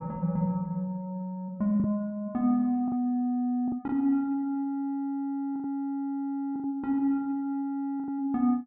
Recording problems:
packet loss; 5% of the sound replaced, filled with the last packet

